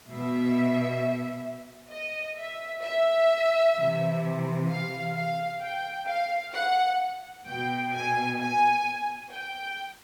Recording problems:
background hiss; slope -2 dB per octave, SNR 26 dB

